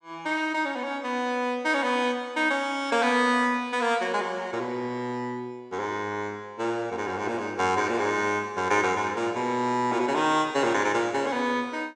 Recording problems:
none

